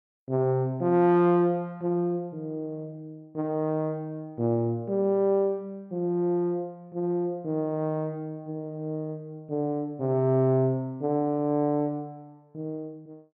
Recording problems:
none

